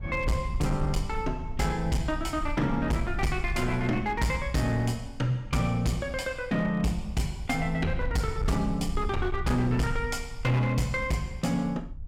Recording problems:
distorted audio; hard clipping, signal-to-distortion ratio 11 dB
rumble; below 70 Hz, SNR 9 dB

